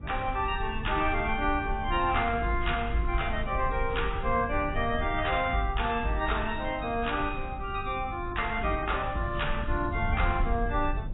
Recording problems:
codec artefacts; AAC, log-spectral distance 2 dB, nothing above 3.7 kHz
hum; 50 Hz, harmonics up to 350 Hz, SNR 16 dB
rumble; below 76 Hz, SNR 8 dB

